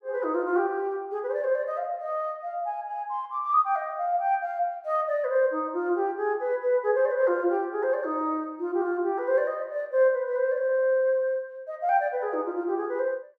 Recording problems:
none

